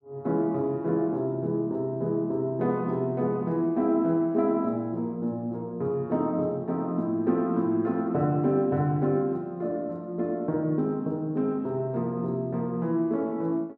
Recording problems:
none

